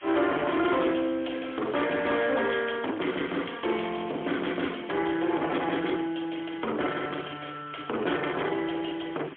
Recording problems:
phone line; 240 Hz to 3.4 kHz, AMR-NB, then MP3
distortion; soft clipping, signal-to-distortion ratio 8 dB
hiss; SNR 19 dB

